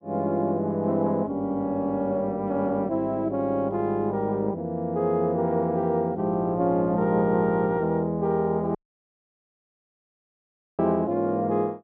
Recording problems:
audio cutting out; at 9 s for 2 s

